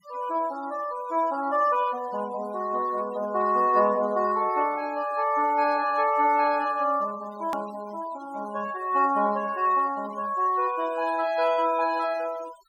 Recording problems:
noise reduction artefacts; signal-to-artefact ratio 21 dB
edit click; at 7.5 s

